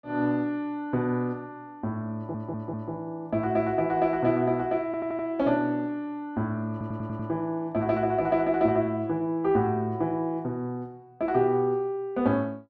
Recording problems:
audio stuttering; at 2 s, at 5 s and at 6.5 s

